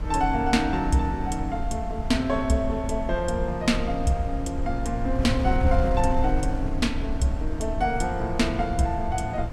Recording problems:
wind on the microphone; below 82 Hz, SNR 5 dB

